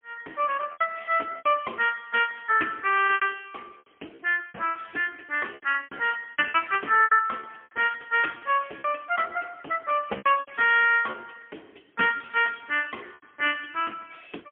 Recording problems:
telephone audio; 280 Hz to 3.2 kHz, AMR-NB, then MP3
packet loss; 11% of the sound replaced, filled with repeated pitch periods

